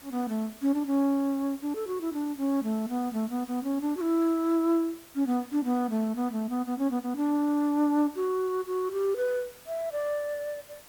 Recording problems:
background hiss; slope -2 dB per octave, SNR 21 dB

